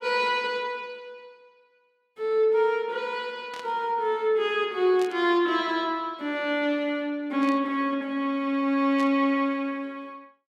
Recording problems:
static burst; 4 times, first at 3.5 s; peak -11 dB vs average level

